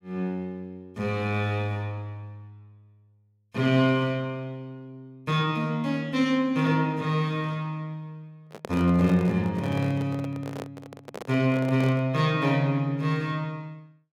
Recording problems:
handling noise; from 8.5 to 12 s; peak -6 dB vs average level

